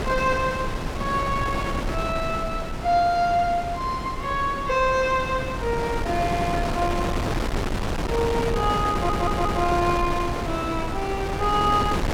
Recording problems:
wind on the microphone; below 730 Hz, SNR 4 dB
audio stuttering; at 6.5 s and at 9 s

